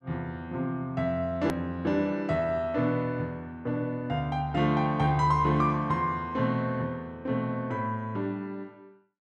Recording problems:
hard cut with a click; at 1.5 s

